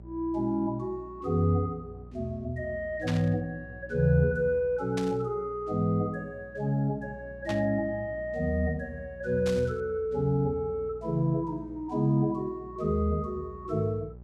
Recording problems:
hum; 60 Hz, harmonics up to 600 Hz, SNR 20 dB
burst of static; 4 times, first at 3 s; peak -3 dB vs average level

